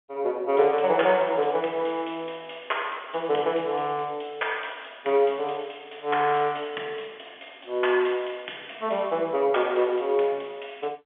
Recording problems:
phone line; 300 Hz to 3.4 kHz, G.711

